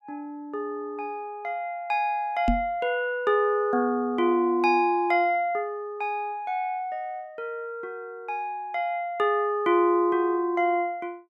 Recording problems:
microphone thump; at 2.5 s; peak +4 dB vs average level

